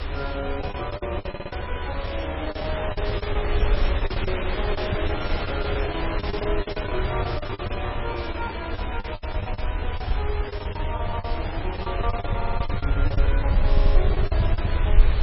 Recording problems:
lossy codec; MP3, log-spectral distance 11 dB
background hiss; SNR 1 dB
low-frequency rumble; below 74 Hz, SNR -3 dB
packet loss; 17% of the sound replaced, filled with the last packet
audio stuttering; at 1.5 s, at 12 s and at 14 s

